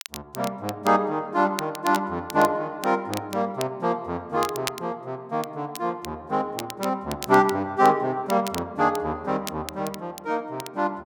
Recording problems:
crackling; vinyl, SNR 14 dB

